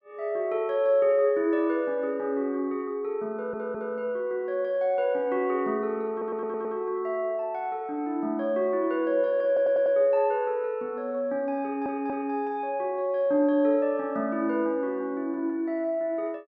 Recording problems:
stutter; 4 times, first at 3.5 s

